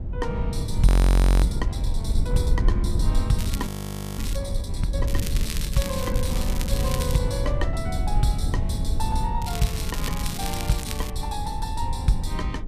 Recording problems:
low-frequency rumble; below 88 Hz, SNR -2 dB
frozen audio; at 1 s for 0.5 s and at 3.5 s for 0.5 s
crackle; at 3.5 s, from 5 to 7 s and from 9.5 to 11 s; loose cable, SNR 6 dB

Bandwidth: 14.5 kHz